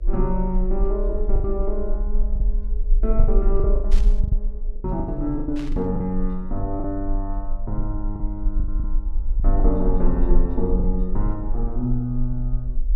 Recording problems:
hum; 60 Hz, harmonics up to 600 Hz, SNR 27 dB
low-frequency rumble; below 40 Hz, strongest tone 24 Hz, SNR -1 dB
packet loss; 8% of the sound replaced, filled with the last packet
burst of static; at 4 s and at 5.5 s; peak -9 dB vs average level

